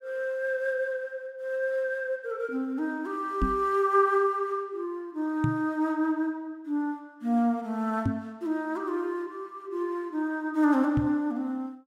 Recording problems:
microphone bump; 4 times, first at 3.5 s; peak +5 dB vs average level

